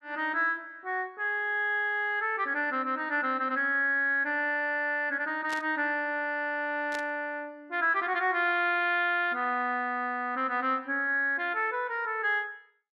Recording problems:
burst of static; at 5.5 s and at 7 s; peak -7 dB vs average level

